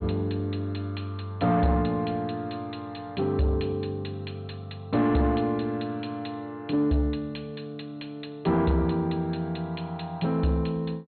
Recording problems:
low-pass filter; nothing above 4.2 kHz
distortion; soft clipping, signal-to-distortion ratio 12 dB

